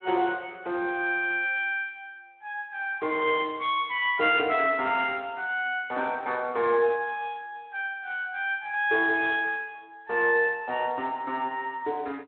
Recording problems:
telephone audio; 320 Hz to 3.5 kHz, Speex

